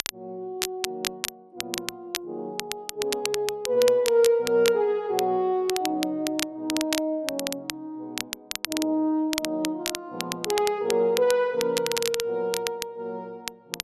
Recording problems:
crackling; vinyl, SNR 7 dB

